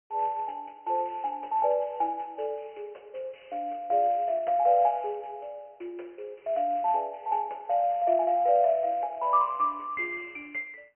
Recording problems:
telephone audio; 370 Hz to 3.5 kHz, G.726

